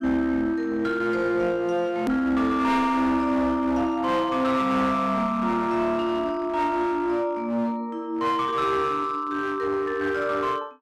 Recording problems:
distorted audio; hard clipping, uneven, signal-to-distortion ratio 10 dB
click at an edit; at 2 s

